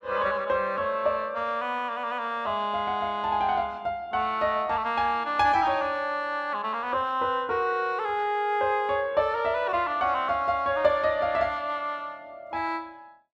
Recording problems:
none

